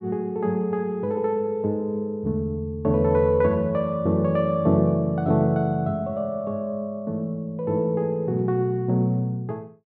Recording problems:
none

